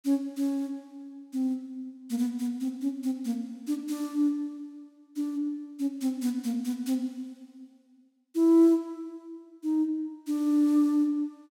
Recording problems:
none

